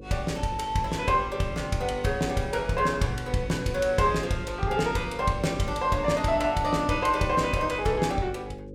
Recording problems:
hum; 50 Hz, harmonics up to 550 Hz, SNR 15 dB

